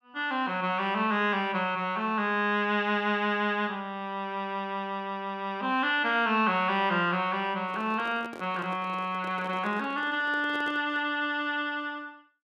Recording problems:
handling noise; from 7.5 to 11 s; peak -11 dB vs average level

